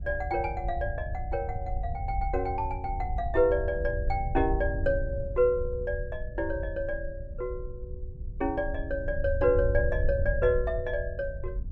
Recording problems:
wind noise; below 80 Hz, SNR 5 dB

